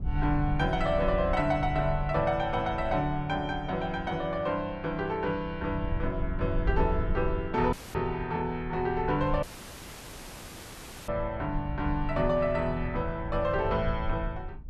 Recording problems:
low-frequency rumble; below 80 Hz, SNR 8 dB
dropout; at 7.5 s and at 9.5 s for 1.5 s

